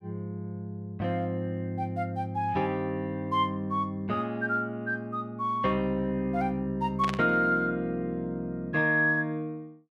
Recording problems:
static burst; at 7 s; peak -2 dB vs average level

